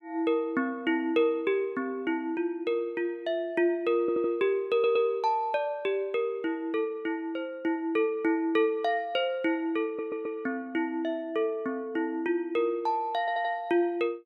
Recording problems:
stutter; 4 times, first at 4 s

